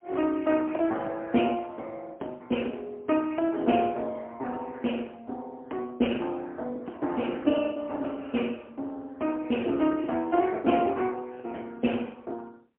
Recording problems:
telephone audio; 190 Hz to 3.1 kHz, AMR-NB, then MP3
lost packets; 5% of the sound replaced, filled with the last packet

